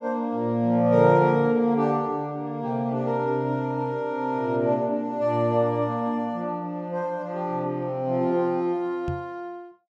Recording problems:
microphone bump; at 9 s; peak -3 dB vs average level

